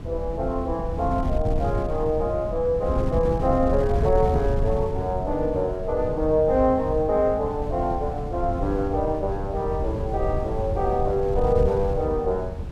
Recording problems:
wind on the microphone; below 140 Hz, SNR 5 dB

